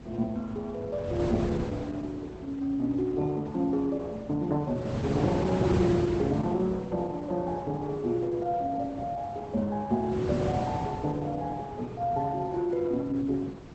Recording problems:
lossy compression; Opus, log-spectral distance 2 dB, nothing above 7.6 kHz
wind on the microphone; below 360 Hz, SNR 6 dB

